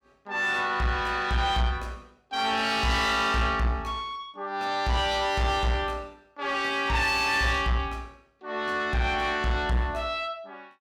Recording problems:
distortion; soft clipping, signal-to-distortion ratio 10 dB

